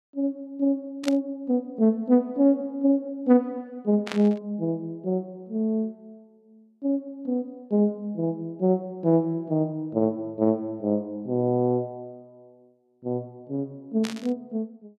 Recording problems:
static burst; at 1 s, at 4 s and at 14 s; peak -3 dB vs average level

